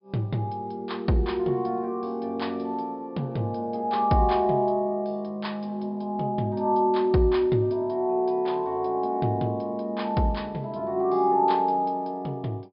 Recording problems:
treble missing; nothing above 5.5 kHz

